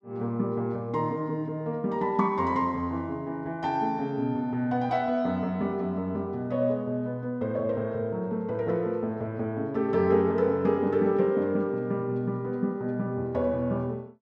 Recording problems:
none

